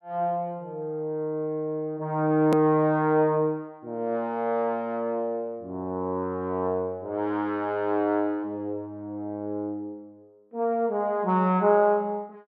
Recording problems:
edit click; at 2.5 s

